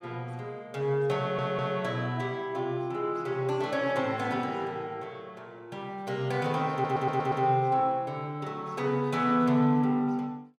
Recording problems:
stutter; at 1 s and at 6.5 s

